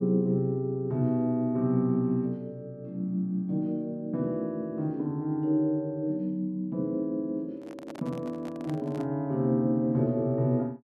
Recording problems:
handling noise; from 7.5 to 9 s; peak -9 dB vs average level

